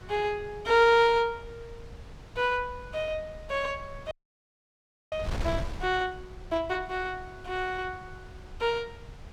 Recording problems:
wind noise; below 180 Hz, SNR 15 dB
audio freezing; at 4 s for 1 s

